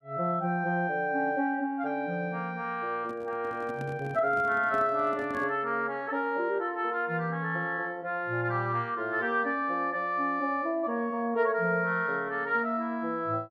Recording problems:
microphone handling noise; from 3 to 5.5 s; peak -8 dB vs average level

